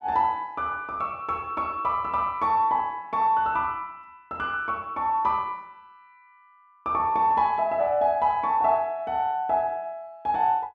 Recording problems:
none

